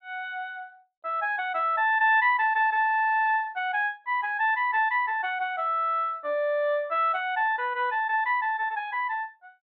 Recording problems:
low-pass filter; nothing above 4.3 kHz

